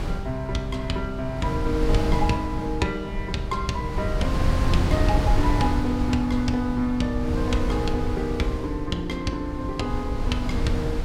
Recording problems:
low-frequency rumble; below 92 Hz, SNR 10 dB
wind on the microphone; below 130 Hz, SNR 2 dB

